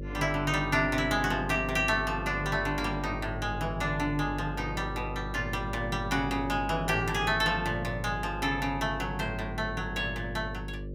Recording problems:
hum; 50 Hz, harmonics up to 600 Hz, SNR 8 dB

